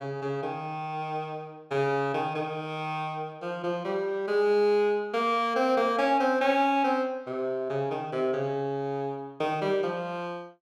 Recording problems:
none

